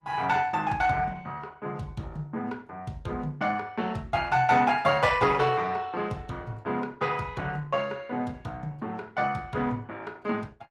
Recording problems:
codec artefacts; Opus, log-spectral distance 3 dB, nothing above 15.1 kHz

